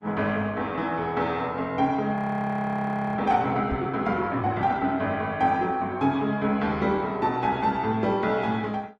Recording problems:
codec artefacts; Opus, log-spectral distance 2 dB, nothing above 13.1 kHz
frozen audio; at 2 s for 1 s
knock on the microphone; at 3.5 s; peak -4 dB vs average level

